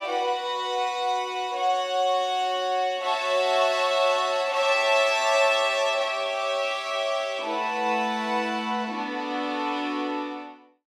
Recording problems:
none

